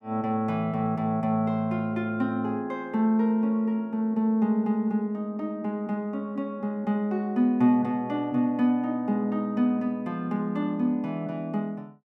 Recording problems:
none

